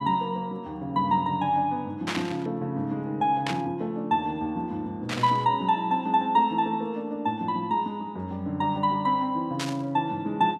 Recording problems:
static burst; 4 times, first at 2 s; peak +1 dB vs average level

